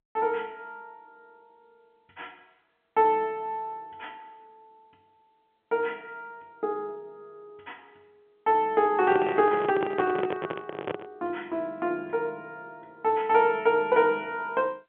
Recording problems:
telephone audio; 190 Hz to 3.7 kHz, G.711
microphone handling noise; from 9 to 11 s; peak 0 dB vs average level

